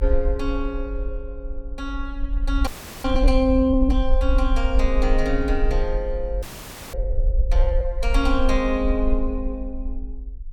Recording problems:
rumble; below 48 Hz, SNR 1 dB
audio freezing; at 2.5 s and at 6.5 s for 0.5 s

